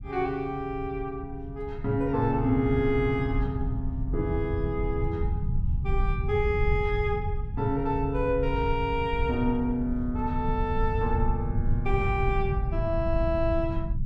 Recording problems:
low-frequency rumble; below 110 Hz, SNR 3 dB

